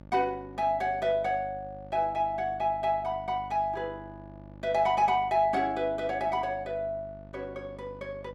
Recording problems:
electrical hum; 50 Hz, harmonics up to 1.4 kHz, SNR 19 dB

